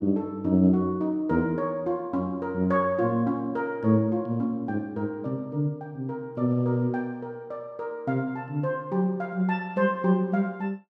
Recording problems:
none

